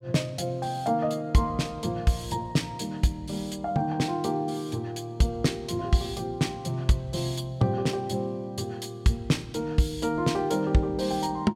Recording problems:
none

